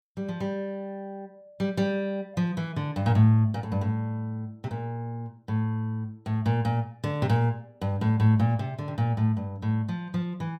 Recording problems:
none

